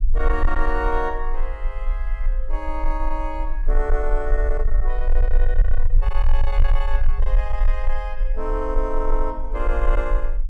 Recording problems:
distorted audio; soft clipping, signal-to-distortion ratio 11 dB
rumble; below 36 Hz, strongest tone 18 Hz, SNR -4 dB

